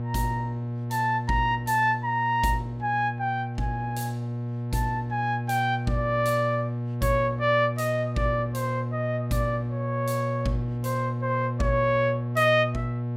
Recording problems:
electrical hum; 60 Hz, harmonics up to 840 Hz, SNR 4 dB

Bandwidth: 16 kHz